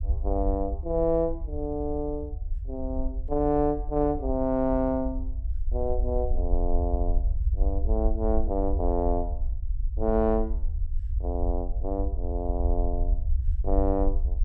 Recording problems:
rumble; below 62 Hz, SNR 2 dB

